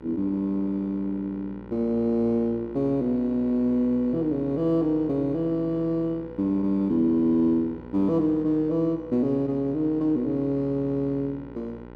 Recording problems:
hum; 60 Hz, harmonics up to 2 kHz, SNR 18 dB

